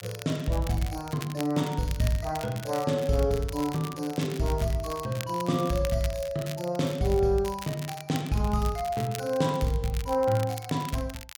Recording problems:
crackling; vinyl, SNR 14 dB

